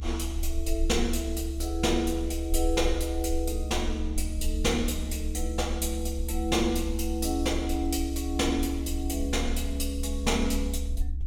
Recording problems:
electrical hum; 60 Hz, harmonics up to 360 Hz, SNR 19 dB
rumble; below 70 Hz, strongest tone 26 Hz, SNR 4 dB

